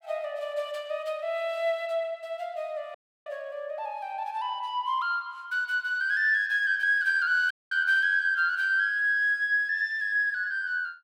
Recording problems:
dropout; at 3 s and at 7.5 s

